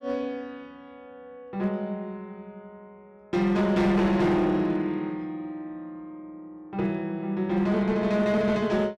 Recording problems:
distortion; hard clipping, uneven, signal-to-distortion ratio 11 dB

